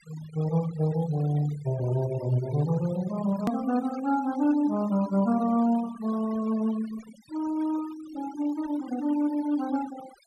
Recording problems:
denoising artefacts; signal-to-artefact ratio 17 dB
edit click; at 3.5 s

